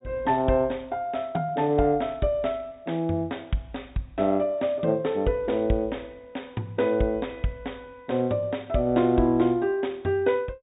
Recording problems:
low-pass filter; nothing above 4 kHz

